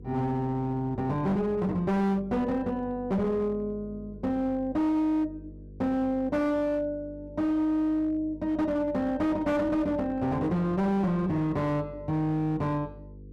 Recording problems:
distorted audio; hard clipping, signal-to-distortion ratio 8 dB
hum; 50 Hz, harmonics up to 500 Hz, SNR 18 dB

